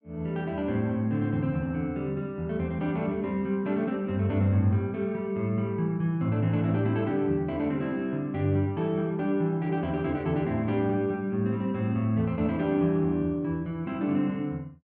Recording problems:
low-pass filter; nothing above 5.5 kHz

